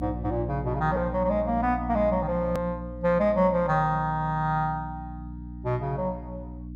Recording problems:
mains hum; 60 Hz, harmonics up to 300 Hz, SNR 10 dB
click at an edit; at 2.5 s

